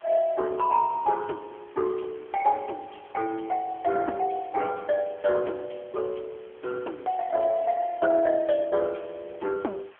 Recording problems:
telephone audio; 280 Hz to 2.7 kHz, AMR-NB
hiss; SNR 27 dB

